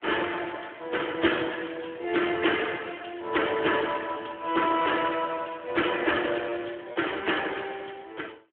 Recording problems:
phone line; 300 Hz to 3.3 kHz, Speex
lost packets; 0.7% of the sound replaced, filled with repeated pitch periods

